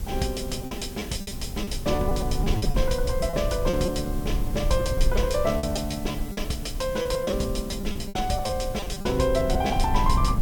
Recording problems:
hiss; SNR 16 dB
rumble; below 78 Hz, SNR 4 dB
packet loss; 11% of the sound replaced, filled with repeated pitch periods

